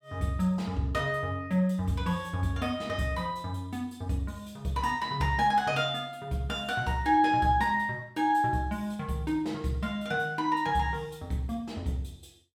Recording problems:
none

